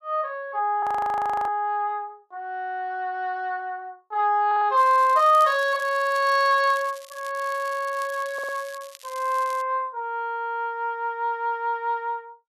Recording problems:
frozen audio; at 1 s for 0.5 s
stutter; at 4.5 s, at 6 s and at 8.5 s
crackling; from 5 to 9.5 s; loose cable, SNR 21 dB

